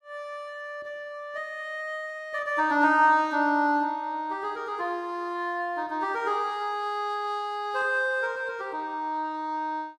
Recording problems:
none

